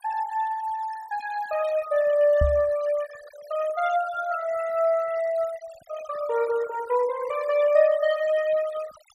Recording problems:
denoising artefacts; signal-to-artefact ratio 18 dB
microphone thump; at 2.5 s; peak +4 dB vs average level

